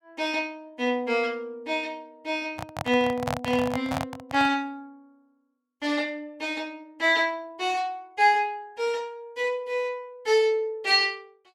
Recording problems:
handling noise; from 2.5 to 4.5 s; peak +1 dB vs average level

